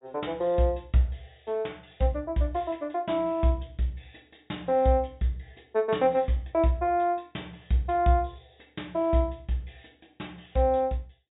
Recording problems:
treble cut off; nothing above 4 kHz

